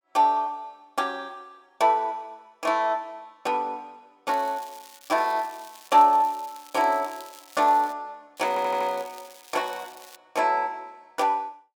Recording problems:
crackle; at 4.5 s, from 5 to 8 s and from 8.5 to 10 s; loose cable, SNR 22 dB
stutter; at 8.5 s

